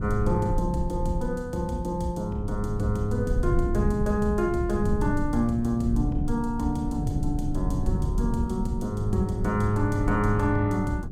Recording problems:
low-frequency rumble; below 130 Hz, SNR 4 dB

